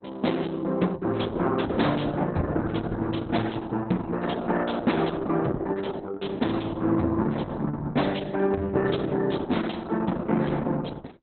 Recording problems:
codec artefacts; Opus, log-spectral distance 5 dB, nothing above 4 kHz

